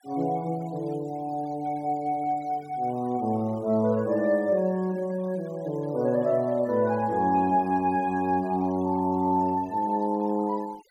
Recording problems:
noise reduction artefacts; signal-to-artefact ratio 24 dB

